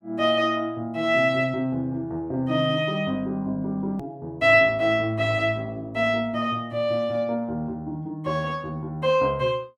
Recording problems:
hard cut with a click; at 4 s

